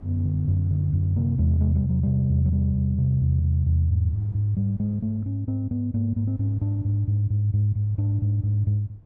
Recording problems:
wind on the microphone; below 200 Hz, SNR 26 dB

